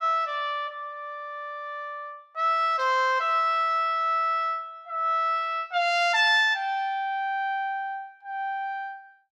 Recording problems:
none

